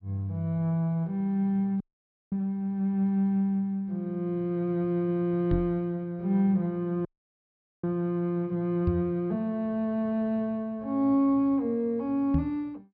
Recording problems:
treble cut off; nothing above 5.5 kHz
dropout; at 2 s for 0.5 s and at 7 s for 1 s
microphone thump; at 5.5 s, at 9 s and at 12 s; peak +4 dB vs average level

